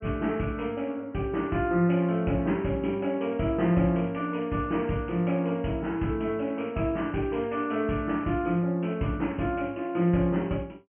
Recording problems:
treble missing; nothing above 3.1 kHz

